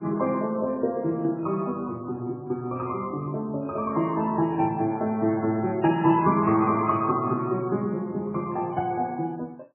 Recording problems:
lossy compression; MP3, log-spectral distance 2 dB, nothing above 2.5 kHz

